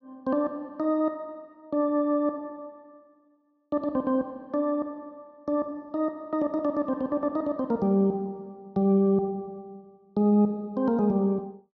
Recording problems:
treble cut off; nothing above 6.9 kHz

